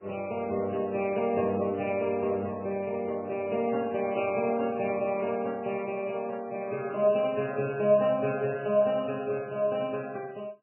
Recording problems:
lossy compression; MP3, then Vorbis, log-spectral distance 2 dB, nothing above 2.6 kHz

